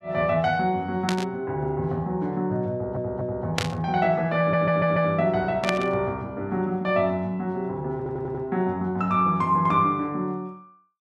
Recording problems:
burst of static; at 1 s, at 3.5 s and at 5.5 s; peak +3 dB vs average level
stutter; at 2.5 s, at 4.5 s and at 8 s

